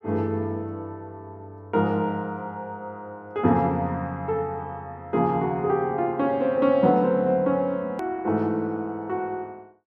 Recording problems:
click at an edit; at 8 s

